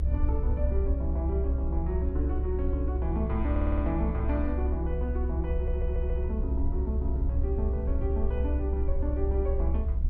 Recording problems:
rumble; below 68 Hz, strongest tone 66 Hz, SNR -5 dB
audio stuttering; at 3.5 s and at 5.5 s

